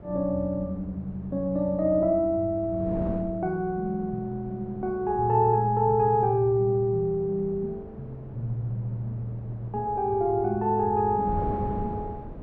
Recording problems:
wind on the microphone; below 370 Hz, SNR 15 dB

